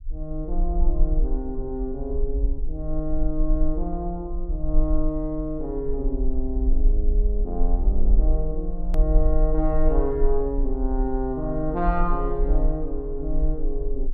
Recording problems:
rumble; below 42 Hz, strongest tone 20 Hz, SNR -2 dB
click at an edit; at 9 s

